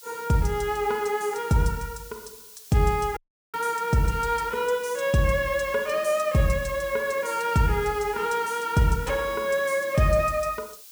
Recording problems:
background hiss; SNR 18 dB
audio cutting out; at 3 s

